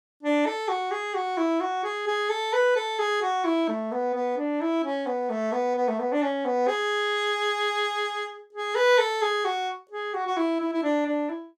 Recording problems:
none

